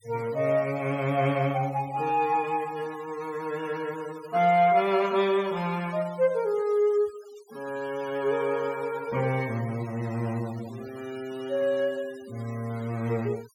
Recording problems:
noise reduction artefacts; signal-to-artefact ratio 21 dB

